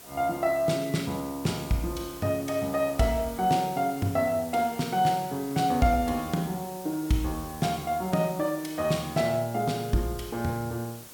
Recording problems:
background hiss; SNR 16 dB

